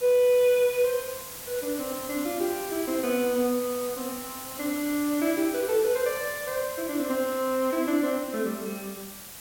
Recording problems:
background hiss; slope -1 dB per octave, SNR 10 dB

